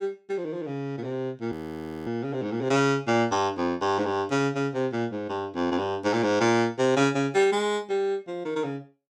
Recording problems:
frozen audio; at 1.5 s for 0.5 s

